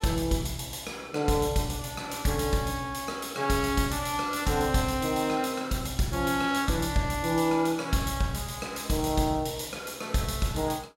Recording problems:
none

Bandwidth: 16 kHz